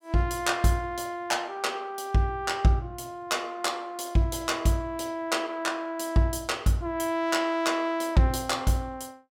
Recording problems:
none

